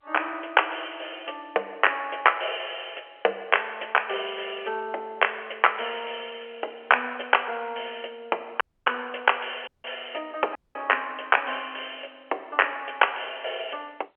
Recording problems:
telephone audio; 340 Hz to 3.2 kHz, G.711
dropout; at 8.5 s, at 9.5 s and at 11 s

